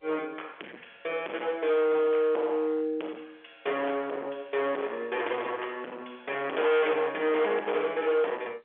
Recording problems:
telephone audio; 320 Hz to 3.4 kHz, G.711
distortion; hard clipping, signal-to-distortion ratio 7 dB

